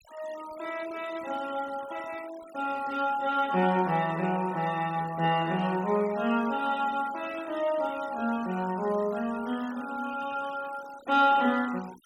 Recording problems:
denoising artefacts; signal-to-artefact ratio 19 dB

